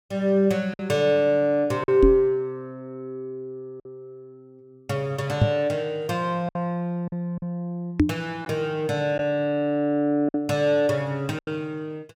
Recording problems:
packet loss; 4% of the sound replaced, filled with silence
microphone bump; at 2 s, at 5.5 s and at 8 s; peak +9 dB vs average level

